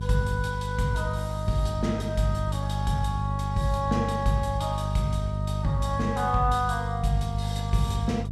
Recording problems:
electrical hum; 50 Hz, harmonics up to 400 Hz, SNR 3 dB

